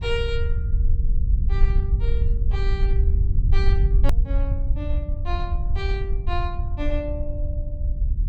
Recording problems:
low-frequency rumble; below 66 Hz, SNR -9 dB
hard cut with a click; at 4 s

